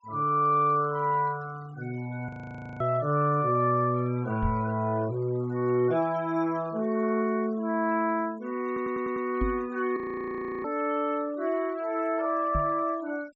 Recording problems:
treble missing; nothing above 8 kHz
denoising artefacts; signal-to-artefact ratio 26 dB
audio freezing; at 2.5 s for 0.5 s and at 10 s for 0.5 s
microphone thump; at 4.5 s, at 9.5 s and at 13 s; peak +1 dB vs average level
audio stuttering; at 8.5 s

